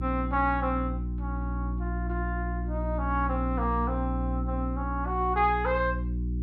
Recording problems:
hum; 60 Hz, harmonics up to 360 Hz, SNR 2 dB

